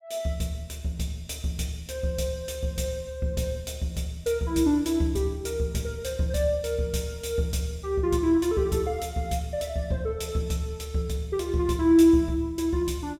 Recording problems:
none

